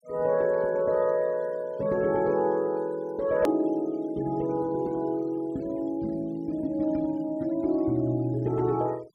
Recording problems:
noise reduction artefacts; signal-to-artefact ratio 27 dB
hard cut with a click; at 3.5 s

